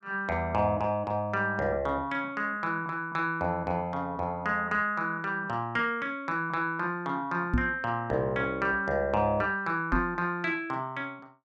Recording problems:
knock on the microphone; at 7.5 s and at 10 s; peak +6 dB vs average level

